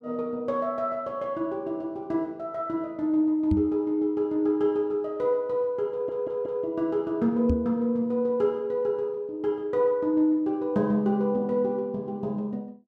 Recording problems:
microphone thump; at 3.5 s and at 7.5 s; peak +4 dB vs average level
audio stuttering; at 6 s

